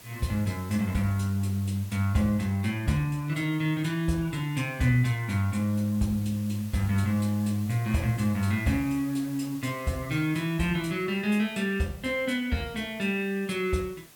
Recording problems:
hiss; slope -2 dB per octave, SNR 21 dB

